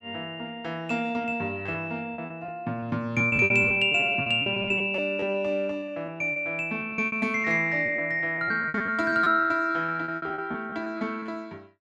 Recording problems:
lost packets; 14% of the sound replaced, filled with repeated pitch periods

